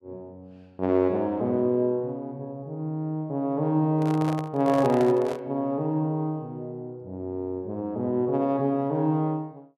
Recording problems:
microphone handling noise; from 4 to 5.5 s; peak -3 dB vs average level

